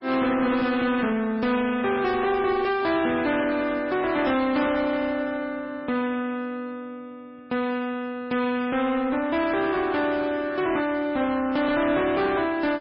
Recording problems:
lossy compression; MP3, log-spectral distance 3 dB, nothing above 5 kHz
distorted audio; soft clipping, signal-to-distortion ratio 10 dB

